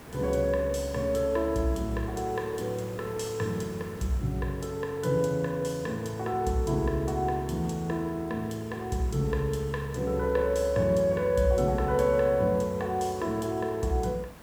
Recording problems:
hiss; slope -6 dB per octave, SNR 19 dB

